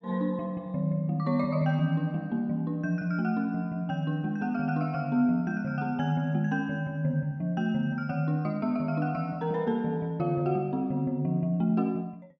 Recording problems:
none

